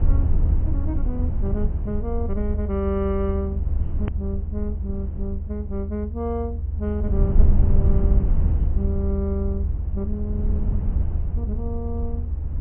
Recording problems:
treble missing; nothing above 3.1 kHz
low-frequency rumble; below 78 Hz, SNR -5 dB
hard cut with a click; at 4 s

